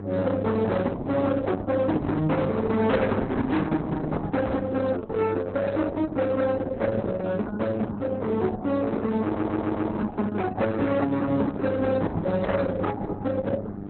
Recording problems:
lossy codec; Vorbis, then Opus, log-spectral distance 3 dB, nothing above 4 kHz
distortion; hard clipping, uneven, signal-to-distortion ratio 8 dB
hum; 50 Hz, harmonics up to 900 Hz, SNR 10 dB
knock on the microphone; at 2 s, at 4.5 s and at 12 s; peak +3 dB vs average level
audio stuttering; at 9 s

